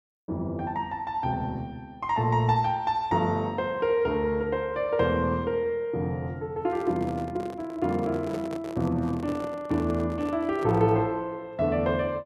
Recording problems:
microphone handling noise; from 6.5 to 11 s; peak -5 dB vs average level

